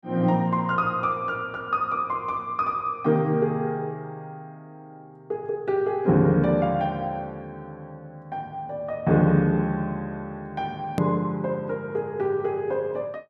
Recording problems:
edit click; at 11 s

